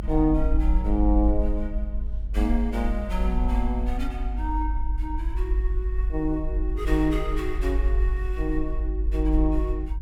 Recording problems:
low-frequency rumble; below 50 Hz, strongest tone 48 Hz, SNR -1 dB

